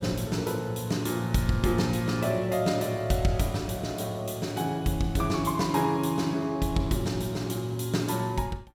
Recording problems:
none

